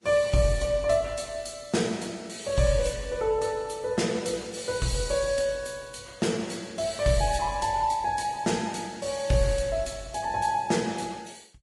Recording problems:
lossy codec; Vorbis, log-spectral distance 5 dB, nothing above 11 kHz

